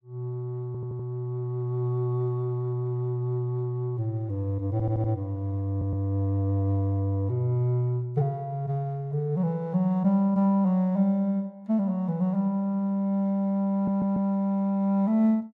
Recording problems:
audio stuttering; 4 times, first at 0.5 s

